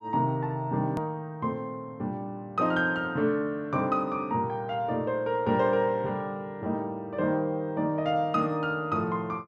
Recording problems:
edit click; at 1 s

